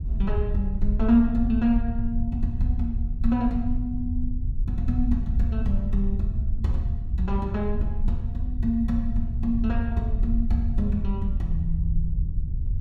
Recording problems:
rumble; below 70 Hz, SNR 1 dB

